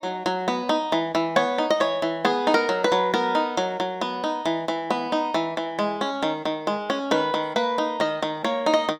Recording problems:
none

